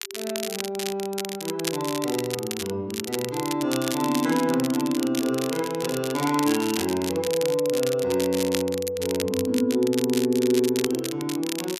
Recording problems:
crackle; vinyl, SNR 8 dB

